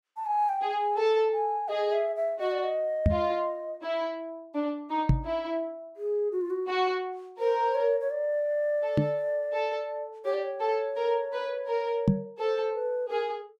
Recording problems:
microphone bump; 4 times, first at 3 s; peak +10 dB vs average level

